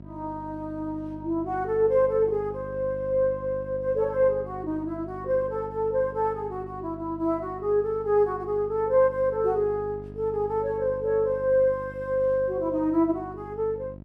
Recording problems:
hum; 50 Hz, harmonics up to 950 Hz, SNR 16 dB

